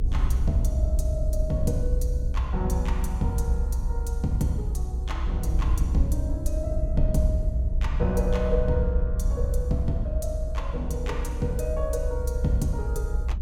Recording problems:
rumble; below 64 Hz, SNR -3 dB

